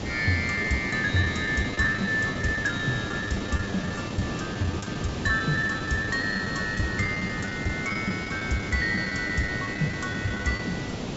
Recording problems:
low-pass filter; nothing above 8 kHz
hiss; SNR 5 dB
lost packets; 10% of the sound replaced, filled with the last packet

